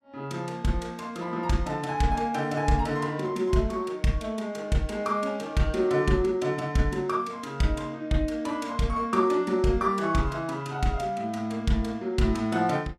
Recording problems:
none

